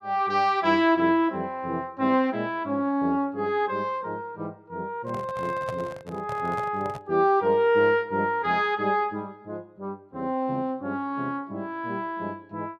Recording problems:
microphone handling noise; from 5 to 7 s; peak -6 dB vs average level

